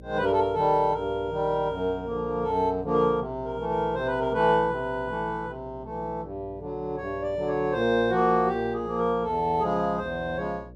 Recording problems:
electrical hum; 60 Hz, harmonics up to 600 Hz, SNR 19 dB

